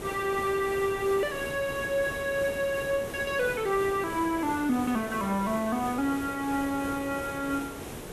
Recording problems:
hiss; slope -6 dB per octave, SNR 10 dB

